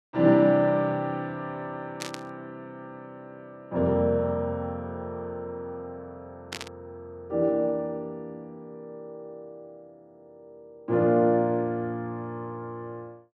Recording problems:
burst of static; at 2 s and at 6.5 s; peak -3 dB vs average level

